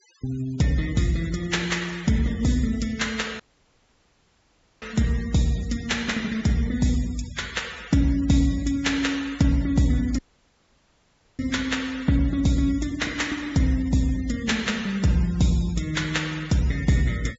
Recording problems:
low-pass filter; nothing above 8 kHz
noise reduction artefacts; signal-to-artefact ratio 20 dB
dropout; at 3.5 s for 1.5 s and at 10 s for 1 s

